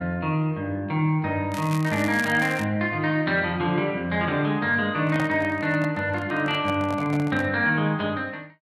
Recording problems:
crackling; from 1.5 to 2.5 s; loose cable, SNR 15 dB
microphone handling noise; from 5 to 7.5 s; peak -4 dB vs average level

